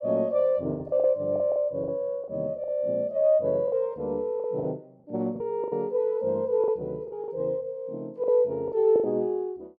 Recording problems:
lost packets; 9% of the sound replaced, filled with the last packet

